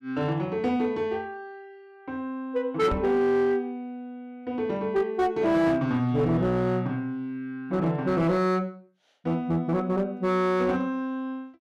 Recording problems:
distorted audio; hard clipping, uneven, signal-to-distortion ratio 11 dB
microphone thump; at 3 s; peak -2 dB vs average level

